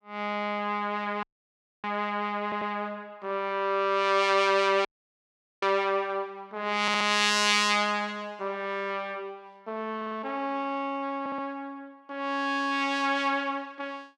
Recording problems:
dropout; at 1 s for 0.5 s and at 5 s for 1 s
stutter; 4 times, first at 2.5 s

